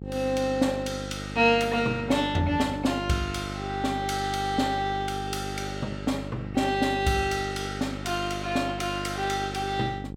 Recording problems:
mains hum; 50 Hz, harmonics up to 800 Hz, SNR 9 dB

